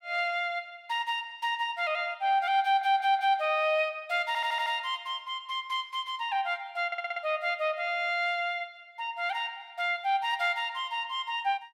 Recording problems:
stutter; at 2.5 s, at 4.5 s and at 7 s

